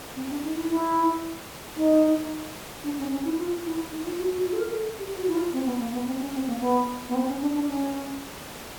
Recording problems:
hiss; slope -4 dB per octave, SNR 12 dB

